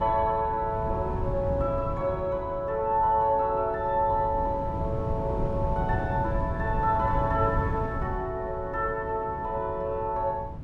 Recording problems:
wind on the microphone; below 180 Hz, SNR 6 dB

